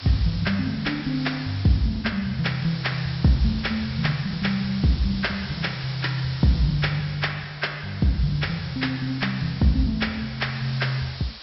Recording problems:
treble missing; nothing above 5.5 kHz
background hiss; slope +1 dB per octave, SNR 14 dB

